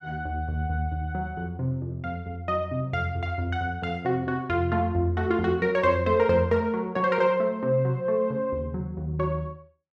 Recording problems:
none

